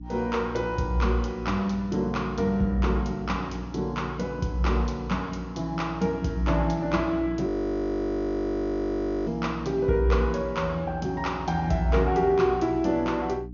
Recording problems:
treble cut off; nothing above 6.7 kHz
hum; 60 Hz, harmonics up to 300 Hz, SNR 13 dB
frozen audio; at 7.5 s for 2 s

